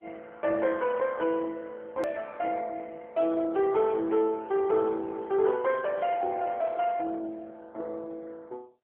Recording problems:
telephone audio; 260 Hz to 3.2 kHz, AMR-NB
hard cut with a click; at 2 s

